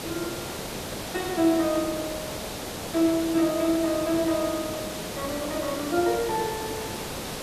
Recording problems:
hiss; slope -4 dB per octave, SNR 6 dB

